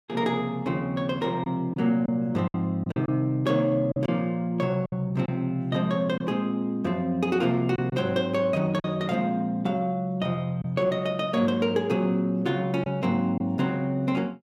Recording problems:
lost packets; 3% of the sound replaced, filled with silence

